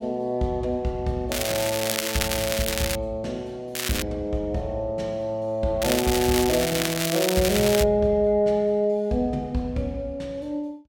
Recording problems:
crackle; from 1.5 to 3 s, at 4 s and from 6 to 8 s; loose cable, SNR 2 dB

